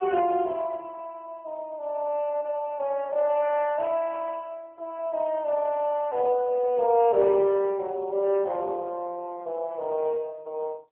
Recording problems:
telephone audio; 340 Hz to 3.3 kHz, AMR-NB

